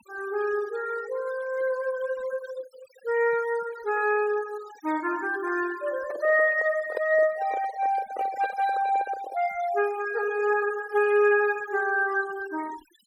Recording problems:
noise reduction artefacts; signal-to-artefact ratio 18 dB
microphone handling noise; from 6 to 9.5 s; peak -1 dB vs average level

